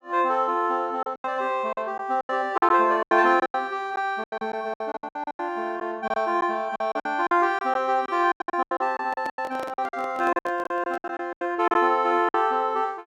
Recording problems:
packet loss; 16% of the sound replaced, filled with silence
handling noise; from 9 to 11 s; peak -7 dB vs average level

